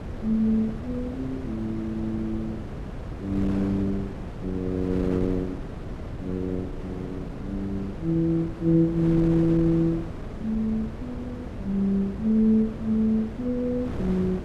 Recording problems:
wind noise; below 350 Hz, SNR 9 dB

